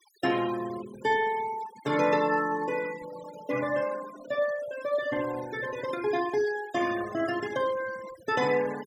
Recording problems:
denoising artefacts; signal-to-artefact ratio 15 dB

